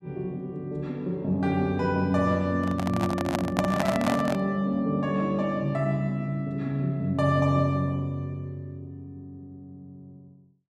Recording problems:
microphone handling noise; from 2.5 to 4.5 s; peak +4 dB vs average level

